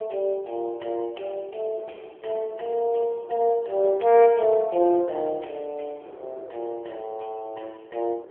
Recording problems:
telephone audio; 300 Hz to 3.9 kHz, AMR-NB
wind on the microphone; below 610 Hz, SNR 23 dB

